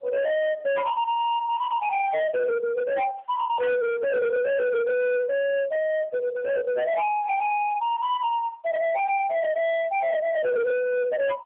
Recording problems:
phone line; 990 Hz to 3 kHz, AMR-NB
distorted audio; hard clipping, signal-to-distortion ratio 7 dB

